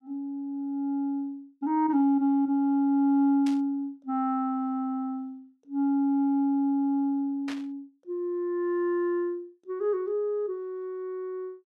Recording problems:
burst of static; at 3.5 s and at 7.5 s; peak -8 dB vs average level

